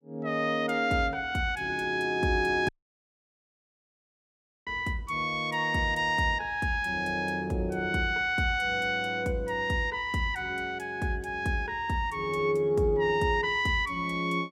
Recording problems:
dropout; at 2.5 s for 2 s

